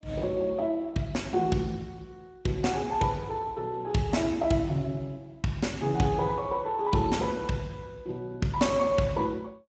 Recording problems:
codec artefacts; Speex, log-spectral distance 3 dB, nothing above 7.6 kHz

